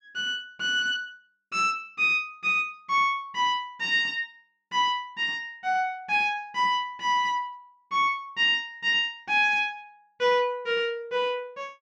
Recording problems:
none

